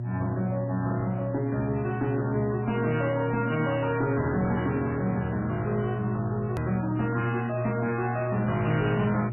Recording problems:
lossy compression; MP3, log-spectral distance 3 dB, nothing above 2.9 kHz
distortion; hard clipping, uneven, signal-to-distortion ratio 11 dB
electrical hum; 60 Hz, harmonics up to 600 Hz, SNR 4 dB
click at an edit; at 6.5 s

